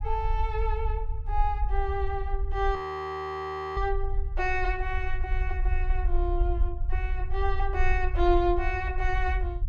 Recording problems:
low-frequency rumble; below 56 Hz, SNR 0 dB
audio freezing; at 3 s for 1 s

